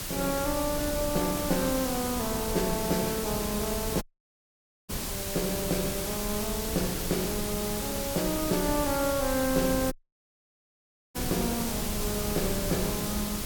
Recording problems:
hiss; slope +1 dB per octave, SNR 3 dB
low-frequency rumble; below 82 Hz, SNR 13 dB
wind on the microphone; below 430 Hz, SNR 10 dB
audio cutting out; at 4 s for 1 s and at 10 s for 1 s

